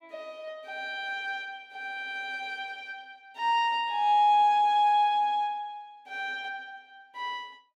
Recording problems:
none

